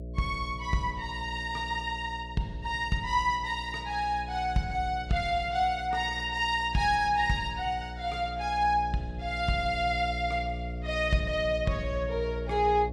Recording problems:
electrical hum; 60 Hz, harmonics up to 660 Hz, SNR 10 dB

